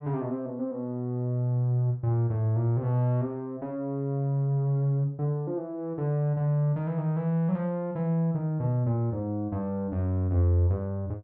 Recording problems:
none

